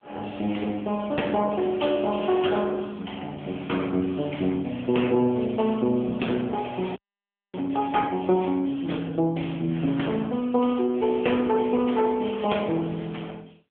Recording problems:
phone line; 170 Hz to 3.4 kHz, AMR-NB
frozen audio; at 7 s for 0.5 s

